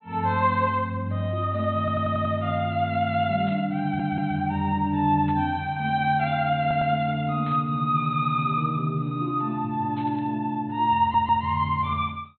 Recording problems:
treble missing; nothing above 4.1 kHz
audio stuttering; 4 times, first at 2 s
burst of static; 4 times, first at 3.5 s; peak -16 dB vs average level

